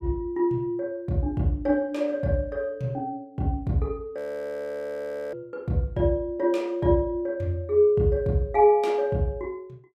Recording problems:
audio freezing; at 4 s for 1 s

